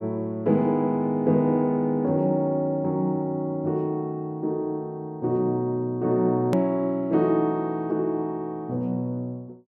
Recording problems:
click at an edit; at 6.5 s

